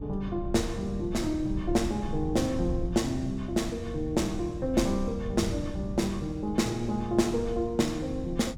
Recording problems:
wind noise; below 120 Hz, SNR 9 dB

